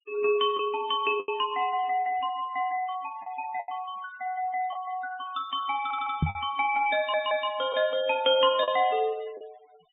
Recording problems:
low-pass filter; nothing above 4 kHz
noise reduction artefacts; signal-to-artefact ratio 21 dB
lost packets; 4% of the sound replaced, filled with the last packet
stutter; at 6 s and at 7 s
knock on the microphone; at 6 s; peak +6 dB vs average level

